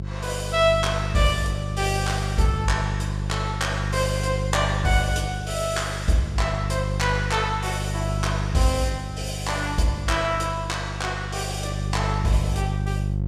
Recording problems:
hum; 50 Hz, harmonics up to 550 Hz, SNR 3 dB

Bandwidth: 14.5 kHz